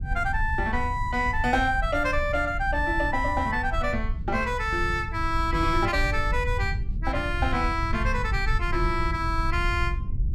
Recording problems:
rumble; below 82 Hz, SNR 5 dB

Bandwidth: 14.5 kHz